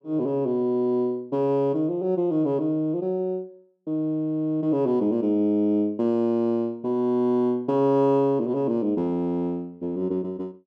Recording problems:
none

